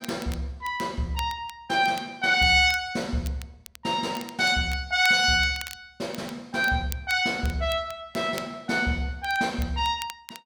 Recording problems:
crackling; vinyl, SNR 19 dB

